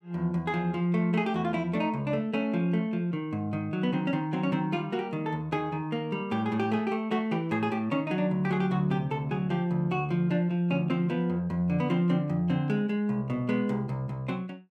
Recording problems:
none

